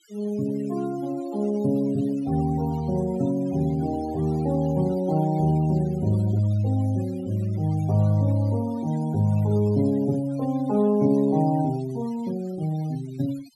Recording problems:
denoising artefacts; signal-to-artefact ratio 20 dB

